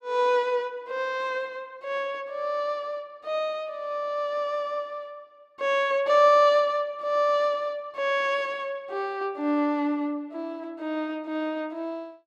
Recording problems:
none

